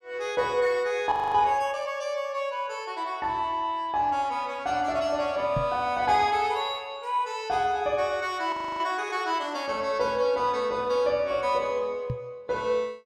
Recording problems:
frozen audio; at 1 s and at 8.5 s
knock on the microphone; at 5.5 s and at 12 s; peak 0 dB vs average level

